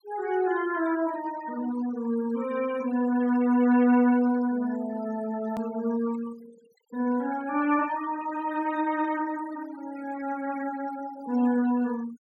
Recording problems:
noise reduction artefacts; signal-to-artefact ratio 19 dB
hard cut with a click; at 5.5 s

